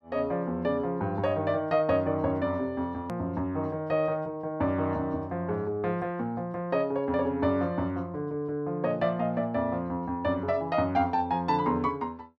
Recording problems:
click at an edit; at 3 s

